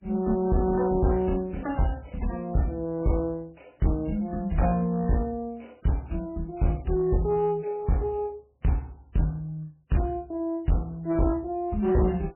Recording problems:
lossy compression; MP3, log-spectral distance 3 dB, nothing above 2.4 kHz
distorted audio; hard clipping, uneven, signal-to-distortion ratio 10 dB

